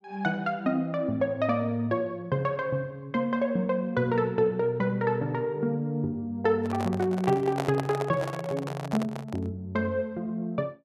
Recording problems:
microphone handling noise; from 6.5 to 9.5 s; peak +1 dB vs average level

